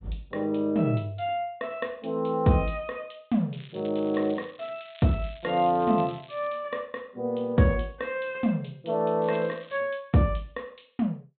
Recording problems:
treble missing; nothing above 4 kHz
crackling; from 3.5 to 6.5 s and at 9 s; loose cable, SNR 23 dB

